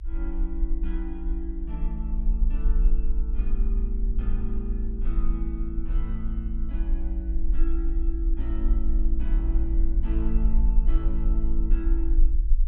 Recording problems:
low-frequency rumble; below 48 Hz, SNR -9 dB

